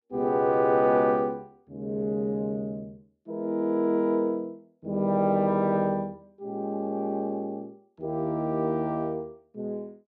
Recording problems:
none

